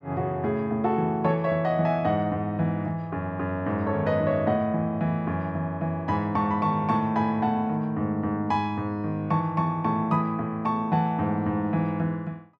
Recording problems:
none

